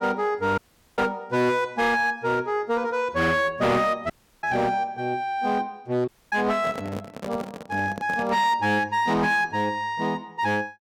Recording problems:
distorted audio; hard clipping, uneven, signal-to-distortion ratio 11 dB
dropout; at 0.5 s, at 4 s and at 6 s
microphone handling noise; from 6.5 to 8.5 s; peak -5 dB vs average level

